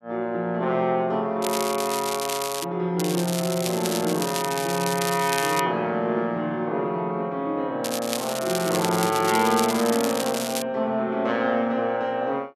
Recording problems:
crackle; from 1.5 to 2.5 s, from 3 to 5.5 s and from 8 to 11 s; loose cable, SNR 6 dB

